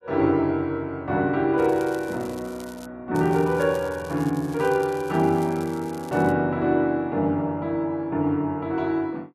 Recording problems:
crackling; from 1.5 to 3 s and from 3 to 6.5 s; loose cable, SNR 23 dB

